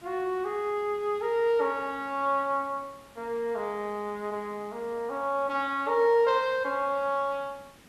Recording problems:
background hiss; slope -3 dB per octave, SNR 25 dB

